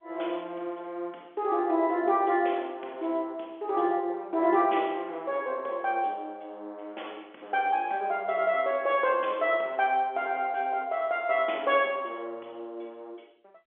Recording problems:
phone line; 280 Hz to 3.5 kHz, G.711

